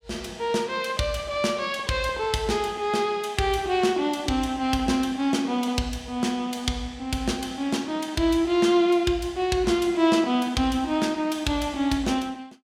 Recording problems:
none

